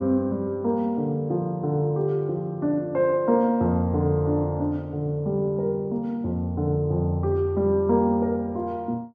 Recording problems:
none

